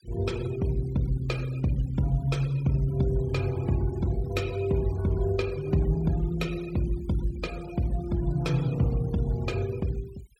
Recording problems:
noise reduction artefacts; signal-to-artefact ratio 20 dB

